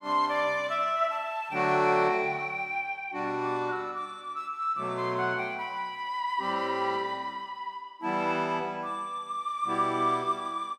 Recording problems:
none

